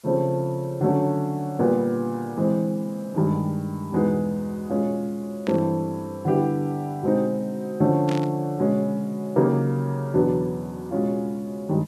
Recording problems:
hiss; slope 0 dB per octave, SNR 30 dB
burst of static; at 5.5 s and at 8 s; peak -8 dB vs average level

